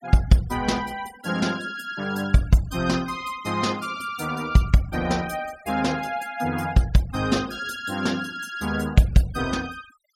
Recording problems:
noise reduction artefacts; signal-to-artefact ratio 20 dB

